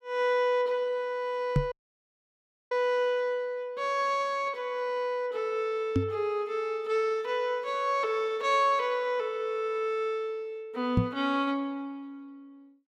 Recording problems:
knock on the microphone; at 1.5 s, at 6 s and at 11 s; peak +8 dB vs average level
audio cutting out; at 1.5 s for 1 s

